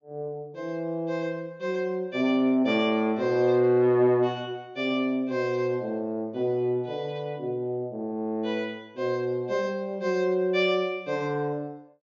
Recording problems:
low-pass filter; nothing above 7.1 kHz

